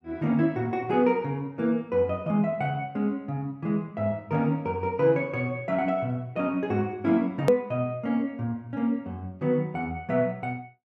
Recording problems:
hard cut with a click; at 7.5 s

